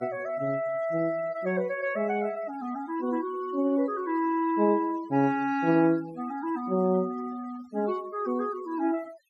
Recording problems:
denoising artefacts; signal-to-artefact ratio 23 dB

